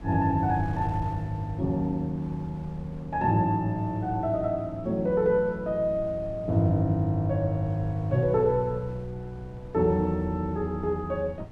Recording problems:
wind on the microphone; below 160 Hz, SNR 17 dB

